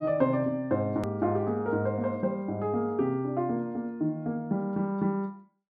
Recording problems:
hard cut with a click; at 1 s

